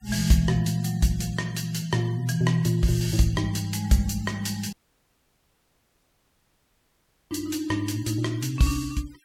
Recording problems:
noise reduction artefacts; signal-to-artefact ratio 22 dB
audio cutting out; at 4.5 s for 2.5 s

